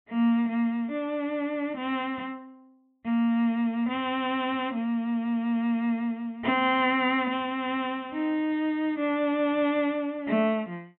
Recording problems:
treble missing; nothing above 3.8 kHz

